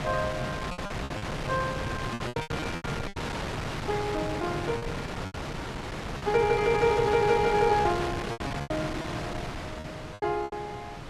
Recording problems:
wind on the microphone; below 1.7 kHz, SNR 5 dB
packet loss; 11% of the sound replaced, filled with repeated pitch periods

